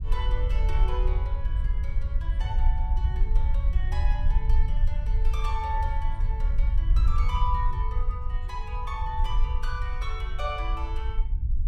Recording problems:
rumble; below 56 Hz, SNR -8 dB

